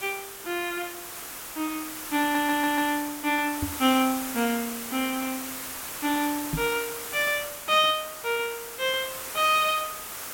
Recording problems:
background hiss; SNR 8 dB
stutter; at 2 s
microphone thump; at 3.5 s and at 6.5 s; peak +1 dB vs average level

